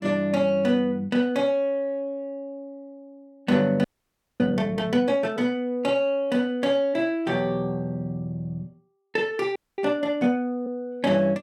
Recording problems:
audio freezing; at 4 s for 0.5 s and at 9.5 s

